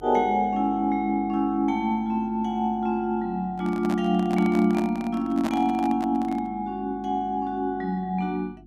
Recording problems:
hum; 50 Hz, harmonics up to 350 Hz, SNR 23 dB
microphone handling noise; from 3.5 to 6.5 s; peak -1 dB vs average level

